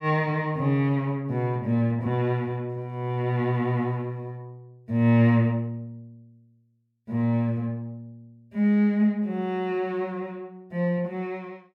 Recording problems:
none

